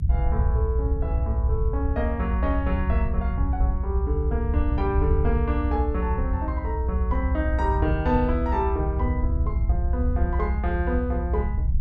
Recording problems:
low-frequency rumble; below 74 Hz, strongest tone 60 Hz, SNR -3 dB

